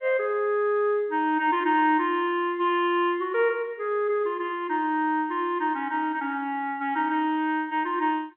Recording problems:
phone line; 320 Hz to 3.4 kHz, G.711

